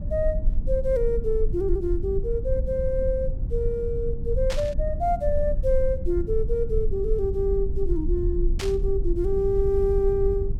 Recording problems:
rumble; below 56 Hz, SNR 3 dB
burst of static; at 4.5 s and at 8.5 s; peak -2 dB vs average level

